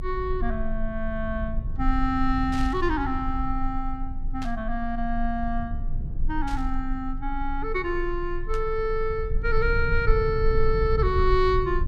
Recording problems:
rumble; below 52 Hz, strongest tone 22 Hz, SNR 4 dB
static burst; 4 times, first at 2.5 s; peak -9 dB vs average level

